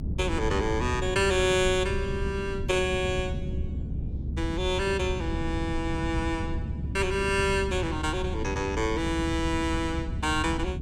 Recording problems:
rumble; below 150 Hz, SNR 5 dB

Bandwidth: 17 kHz